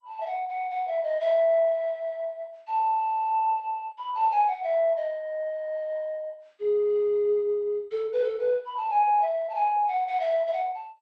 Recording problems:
lossy compression; MP2, log-spectral distance 2 dB

